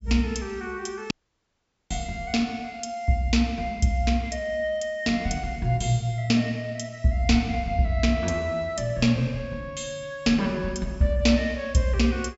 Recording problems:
treble cut off; nothing above 8 kHz
audio cutting out; at 1 s for 1 s

